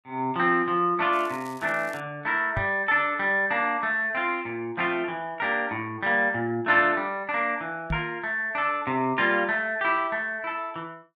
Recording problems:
crackling; at 1 s; loose cable, SNR 26 dB
microphone bump; at 2.5 s and at 8 s; peak -1 dB vs average level

